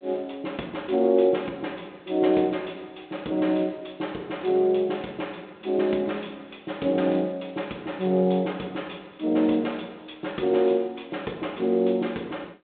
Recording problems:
phone line; 190 Hz to 3.7 kHz, G.726

